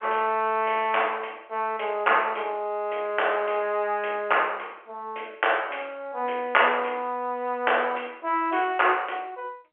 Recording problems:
phone line; 300 Hz to 3.2 kHz, G.711

